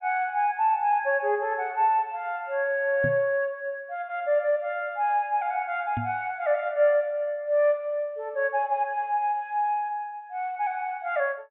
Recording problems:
treble cut off; nothing above 4 kHz
knock on the microphone; at 3 s and at 6 s; peak -2 dB vs average level

